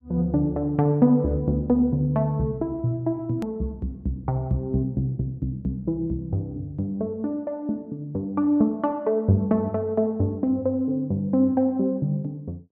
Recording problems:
hard cut with a click; at 3.5 s

